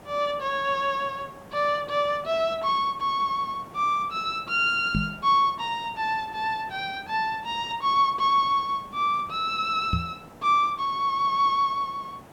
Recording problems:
background hiss; SNR 22 dB
microphone bump; at 5 s and at 10 s; peak +2 dB vs average level

